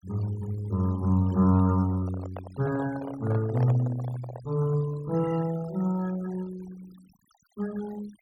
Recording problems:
noise reduction artefacts; signal-to-artefact ratio 21 dB
handling noise; from 2 to 4.5 s; peak -7 dB vs average level

